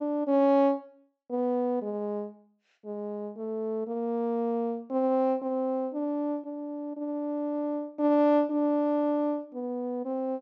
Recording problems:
treble cut off; nothing above 8 kHz

